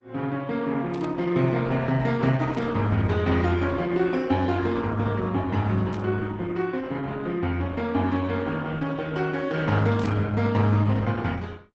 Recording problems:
codec artefacts; Opus, log-spectral distance 3 dB, nothing above 7.6 kHz
burst of static; 4 times, first at 1 s; peak -14 dB vs average level

